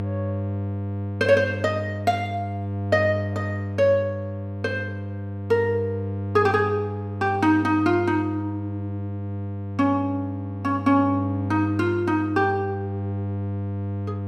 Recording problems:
hum; 50 Hz, harmonics up to 900 Hz, SNR 6 dB

